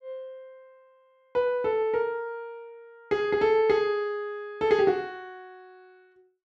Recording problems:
none

